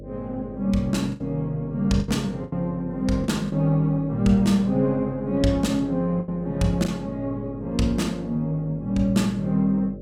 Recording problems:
electrical hum; 50 Hz, harmonics up to 600 Hz, SNR 16 dB
lost packets; 4% of the sound replaced, filled with the last packet

